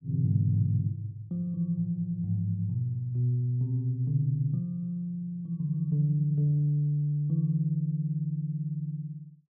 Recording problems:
none

